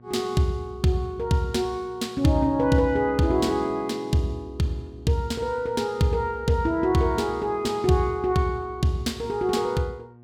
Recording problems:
hum; 60 Hz, harmonics up to 1.1 kHz, SNR 25 dB

